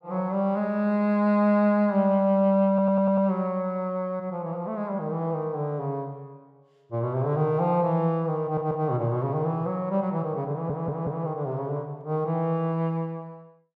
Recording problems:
stutter; at 2.5 s, at 8.5 s and at 11 s

